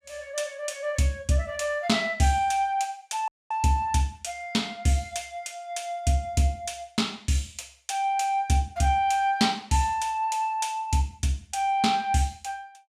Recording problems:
dropout; at 3.5 s

